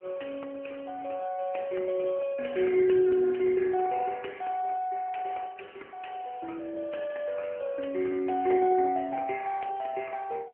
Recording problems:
phone line; 260 Hz to 3.1 kHz, AMR-NB

